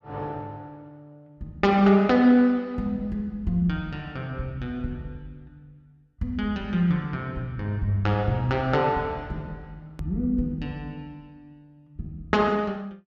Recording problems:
hard cut with a click; at 10 s

